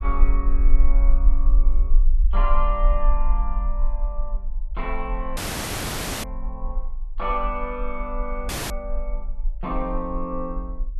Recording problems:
low-frequency rumble; below 38 Hz, strongest tone 20 Hz, SNR -5 dB
audio cutting out; at 5.5 s for 1 s and at 8.5 s

